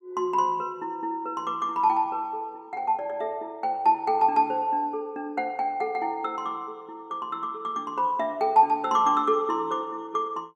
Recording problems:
none

